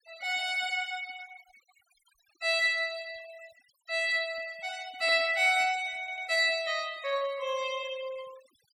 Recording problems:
denoising artefacts; signal-to-artefact ratio 21 dB
stutter; at 6 s

